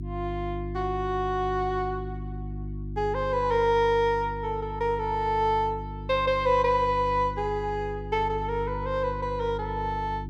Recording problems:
electrical hum; 50 Hz, harmonics up to 350 Hz, SNR 10 dB

